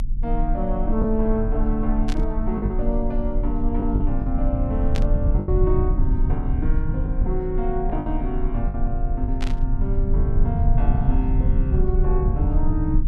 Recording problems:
low-frequency rumble; below 68 Hz, SNR -3 dB
packet loss; 4% of the sound replaced, filled with the last packet
burst of static; at 2 s, at 5 s and at 9.5 s; peak -2 dB vs average level

